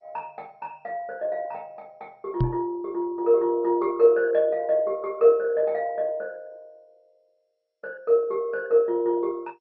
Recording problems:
lossy compression; MP2, log-spectral distance 2 dB
microphone thump; at 2.5 s; peak +3 dB vs average level

